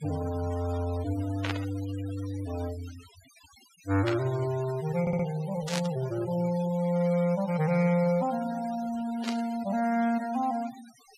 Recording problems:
denoising artefacts; signal-to-artefact ratio 17 dB
static burst; 4 times, first at 1.5 s; peak -1 dB vs average level
audio stuttering; at 5 s

